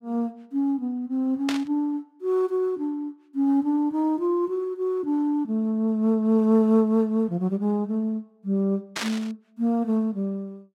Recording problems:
static burst; at 1.5 s and at 9 s; peak 0 dB vs average level

